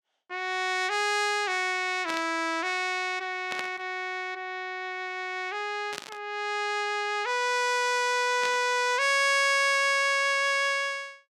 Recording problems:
burst of static; 4 times, first at 2 s; peak -4 dB vs average level

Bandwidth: 16 kHz